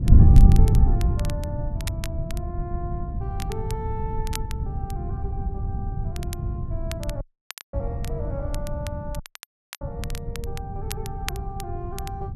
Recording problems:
wind noise; below 120 Hz, SNR -12 dB
crackle; vinyl, SNR 4 dB
audio cutting out; at 7 s for 0.5 s and at 9 s for 0.5 s

